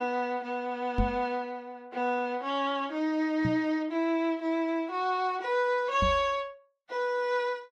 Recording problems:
lossy compression; Vorbis, log-spectral distance 2 dB
microphone thump; at 1 s, at 3.5 s and at 6 s; peak +4 dB vs average level

